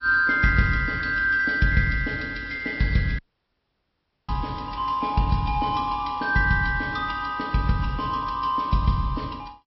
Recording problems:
low-pass filter; nothing above 5.5 kHz
lossy compression; AAC, log-spectral distance 3 dB
audio cutting out; at 3 s for 1 s

